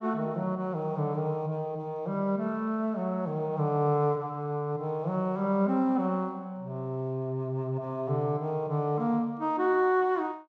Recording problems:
none

